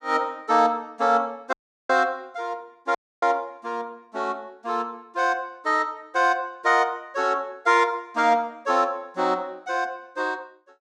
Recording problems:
dropout; at 1.5 s and at 3 s

